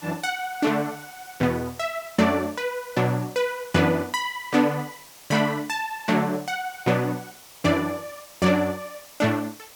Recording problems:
background hiss; slope 0 dB per octave, SNR 20 dB

